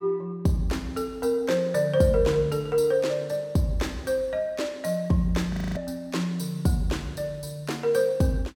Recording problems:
frozen audio; at 5.5 s

